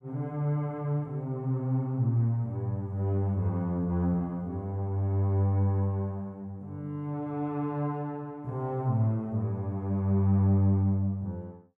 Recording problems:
none

